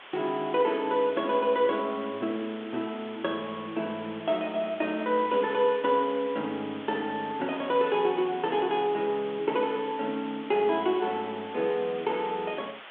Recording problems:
telephone audio; 240 Hz to 3.7 kHz, G.726
background hiss; SNR 16 dB

